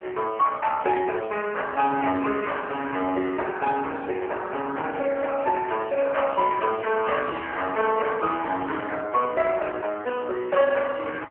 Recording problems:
telephone audio; 320 Hz to 3.2 kHz, AMR-NB

